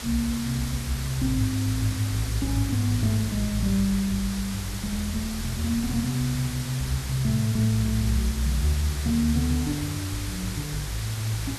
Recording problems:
hiss; slope -1 dB per octave, SNR 9 dB

